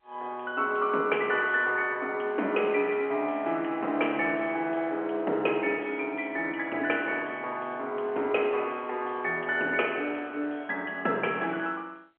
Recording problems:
telephone audio; 240 Hz to 3.1 kHz, G.711

